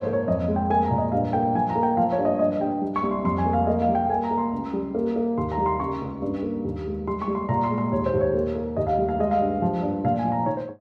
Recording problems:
none

